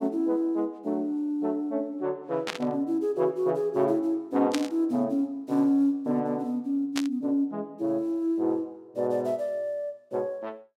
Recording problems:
burst of static; at 2.5 s, at 4.5 s and at 7 s; peak +1 dB vs average level

